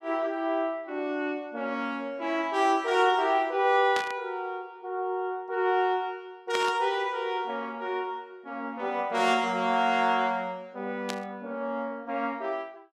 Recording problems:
static burst; at 4 s, at 6.5 s and at 11 s; peak -1 dB vs average level

